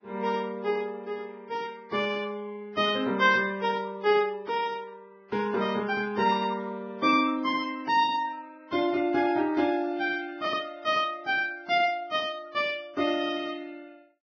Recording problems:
codec artefacts; Vorbis, log-spectral distance 3 dB, nothing above 5.7 kHz

